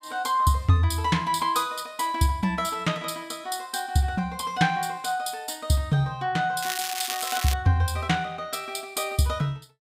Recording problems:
crackling; at 6.5 s; loose cable, SNR 5 dB

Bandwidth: 15.5 kHz